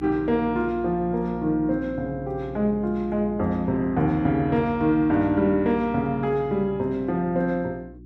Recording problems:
electrical hum; 60 Hz, harmonics up to 360 Hz, SNR 17 dB

